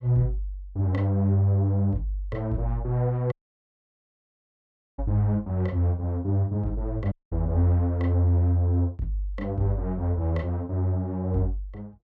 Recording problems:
audio cutting out; at 3.5 s for 1.5 s and at 7 s

